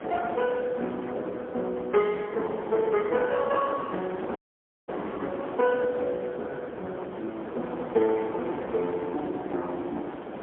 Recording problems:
phone line; 220 Hz to 3.4 kHz, AMR-NB, then MP3
wind on the microphone; below 870 Hz, SNR 9 dB
dropout; at 4.5 s for 0.5 s

